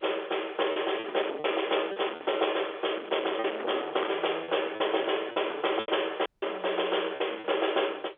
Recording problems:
phone line; 340 Hz to 3.5 kHz, G.711
distortion; soft clipping, signal-to-distortion ratio 12 dB
lost packets; 7% of the sound replaced, filled with repeated pitch periods
audio cutting out; at 6.5 s

